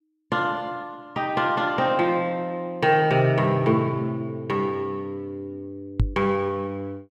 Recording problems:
microphone thump; at 6 s; peak +6 dB vs average level

